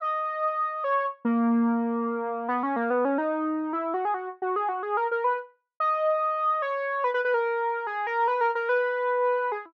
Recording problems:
none

